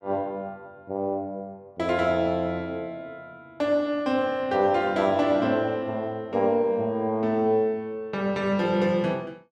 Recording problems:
none

